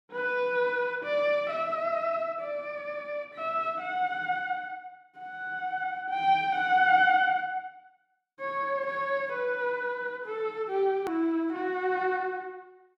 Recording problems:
click at an edit; at 11 s

